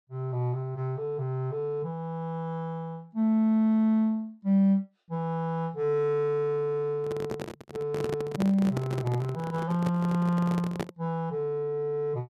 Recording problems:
microphone handling noise; from 7 to 11 s; peak 0 dB vs average level

